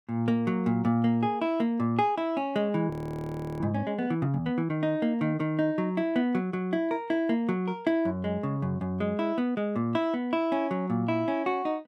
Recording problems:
audio freezing; at 3 s for 0.5 s

